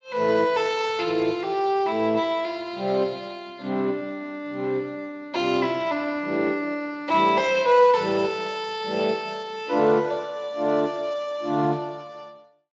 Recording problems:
lossy codec; Speex, log-spectral distance 3 dB

